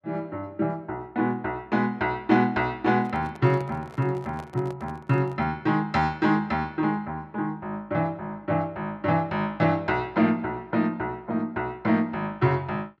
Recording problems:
microphone handling noise; from 3 to 5.5 s; peak -11 dB vs average level

